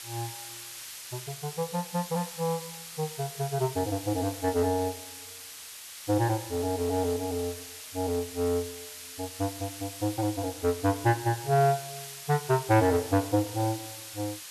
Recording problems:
background hiss; slope +3 dB per octave, SNR 11 dB

